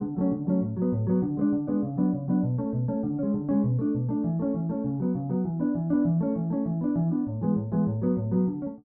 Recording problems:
none

